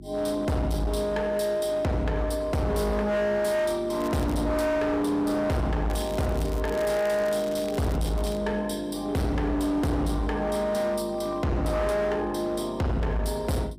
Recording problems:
distortion; hard clipping, uneven, signal-to-distortion ratio 7 dB
hum; 50 Hz, harmonics up to 350 Hz, SNR 19 dB
crackling; at 4 s and from 6 to 8.5 s; loose cable, SNR 18 dB

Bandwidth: 15.5 kHz